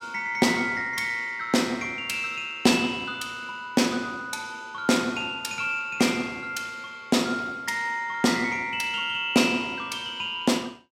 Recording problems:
none

